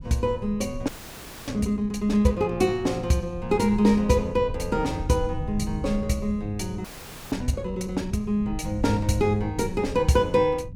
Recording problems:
rumble; below 120 Hz, SNR 12 dB
audio freezing; at 1 s for 0.5 s and at 7 s

